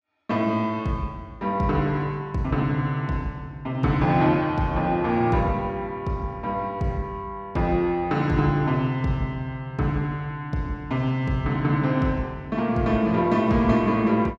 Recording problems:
none

